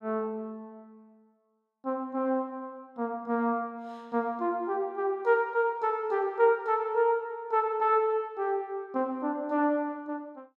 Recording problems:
none

